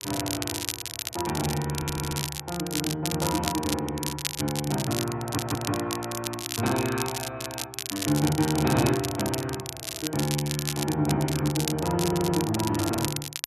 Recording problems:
crackling; vinyl, SNR 4 dB
audio stuttering; at 1.5 s, at 5 s and at 12 s

